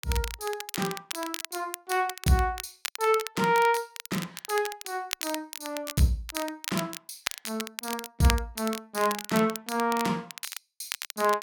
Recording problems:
crackle; vinyl, SNR 8 dB

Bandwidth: 17.5 kHz